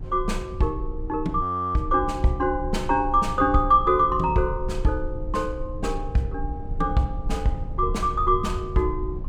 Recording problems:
low-frequency rumble; below 72 Hz, strongest tone 28 Hz, SNR 9 dB
frozen audio; at 1.5 s

